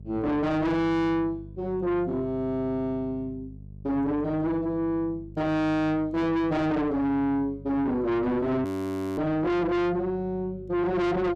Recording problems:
distortion; soft clipping, signal-to-distortion ratio 6 dB
electrical hum; 50 Hz, harmonics up to 450 Hz, SNR 18 dB
frozen audio; at 8.5 s for 0.5 s

